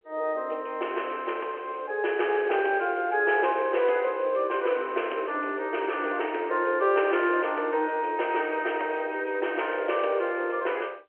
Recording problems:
telephone audio; 300 Hz to 3.2 kHz, G.711

